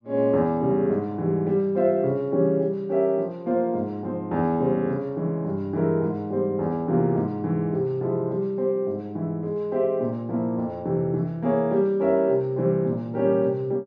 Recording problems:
none

